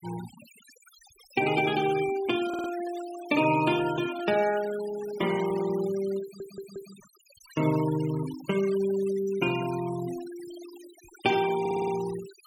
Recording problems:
noise reduction artefacts; signal-to-artefact ratio 16 dB
stutter; at 2.5 s, at 6 s and at 12 s

